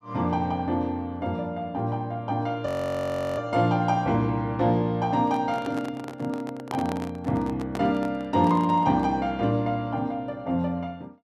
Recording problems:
frozen audio; at 2.5 s for 0.5 s
microphone handling noise; from 5 to 9 s; peak -4 dB vs average level

